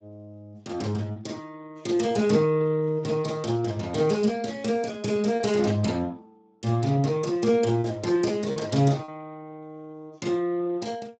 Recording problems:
lossy codec; Speex, log-spectral distance 3 dB, nothing above 7.8 kHz
lost packets; 1.9% of the sound replaced, filled with repeated pitch periods

